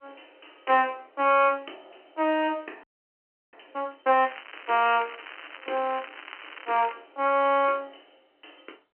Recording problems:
telephone audio; 280 Hz to 3.1 kHz, G.711
frozen audio; at 3 s for 0.5 s
crackling; from 4 to 7 s; loose cable, SNR 17 dB

